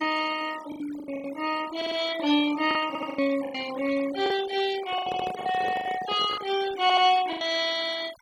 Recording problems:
noise reduction artefacts; signal-to-artefact ratio 15 dB
lost packets; 11% of the sound replaced, filled with the last packet
audio stuttering; 4 times, first at 2 s
microphone handling noise; from 5 to 6.5 s; peak -6 dB vs average level

